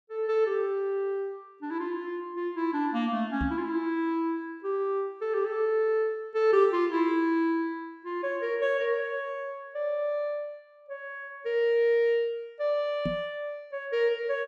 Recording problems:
microphone thump; at 3.5 s and at 13 s; peak +1 dB vs average level

